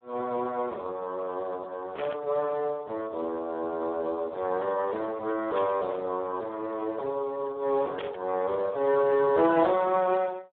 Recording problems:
phone line; 340 Hz to 2 kHz, Speex
static burst; at 2 s, at 5.5 s and at 8 s; peak -6 dB vs average level

